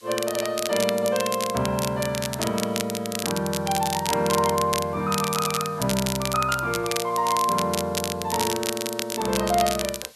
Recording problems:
hiss; slope +2 dB per octave, SNR 24 dB
crackle; vinyl, SNR 5 dB

